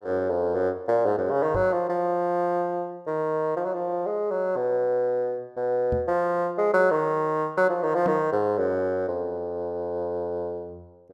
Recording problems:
knock on the microphone; at 1.5 s, at 6 s and at 8 s; peak -2 dB vs average level

